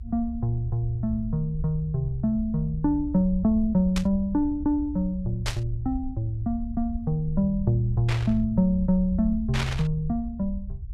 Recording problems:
low-frequency rumble; below 68 Hz, SNR 10 dB
burst of static; 4 times, first at 4 s; peak 0 dB vs average level

